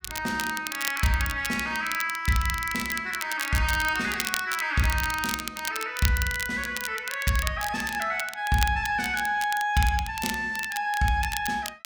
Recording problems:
crackling; vinyl, SNR 8 dB

